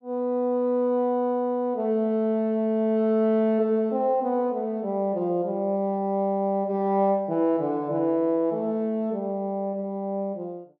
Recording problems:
none

